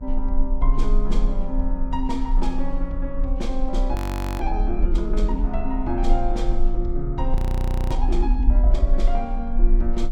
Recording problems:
hum; 60 Hz, harmonics up to 540 Hz, SNR 14 dB
low-frequency rumble; below 40 Hz, strongest tone 30 Hz, SNR -3 dB
audio freezing; at 4 s and at 7.5 s for 0.5 s

